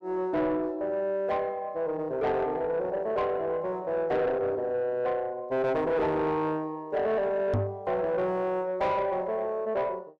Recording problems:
distortion; soft clipping, signal-to-distortion ratio 10 dB
microphone thump; at 7.5 s; peak +4 dB vs average level

